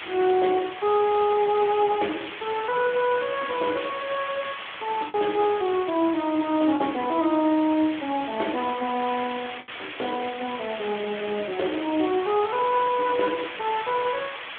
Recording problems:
telephone audio; 260 Hz to 3.5 kHz, Speex
background hiss; SNR 10 dB
lost packets; 1.3% of the sound replaced, filled with the last packet

